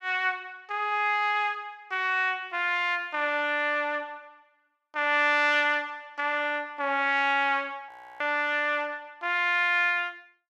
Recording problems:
audio freezing; at 8 s

